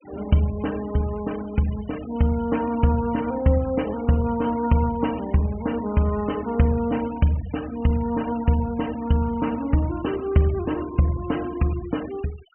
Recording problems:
low-pass filter; nothing above 3.1 kHz
noise reduction artefacts; signal-to-artefact ratio 21 dB

